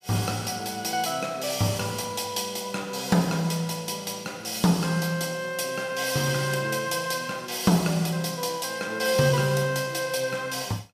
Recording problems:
none

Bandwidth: 15.5 kHz